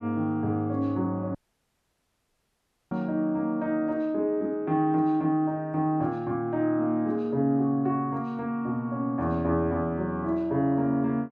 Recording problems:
audio cutting out; at 1.5 s for 1.5 s

